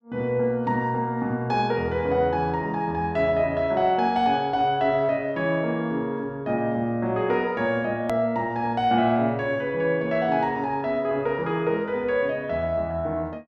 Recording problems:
click at an edit; at 8 s

